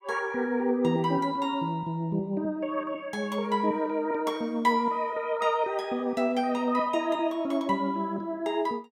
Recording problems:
none

